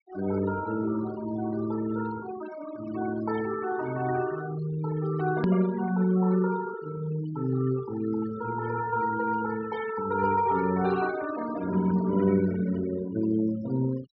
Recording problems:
treble missing; nothing above 5.5 kHz
noise reduction artefacts; signal-to-artefact ratio 15 dB
click at an edit; at 5.5 s

